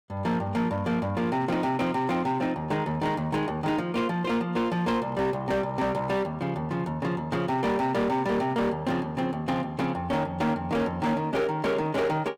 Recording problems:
distorted audio; hard clipping, signal-to-distortion ratio 11 dB

